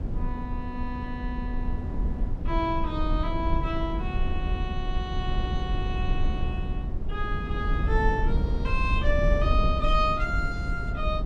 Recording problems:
rumble; below 78 Hz, SNR -2 dB

